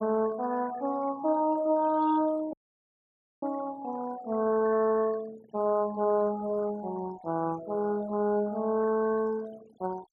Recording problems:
noise reduction artefacts; signal-to-artefact ratio 19 dB
dropout; at 2.5 s for 1 s

